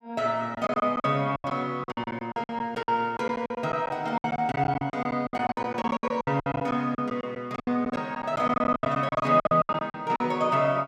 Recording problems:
lost packets; 19% of the sound replaced, filled with silence

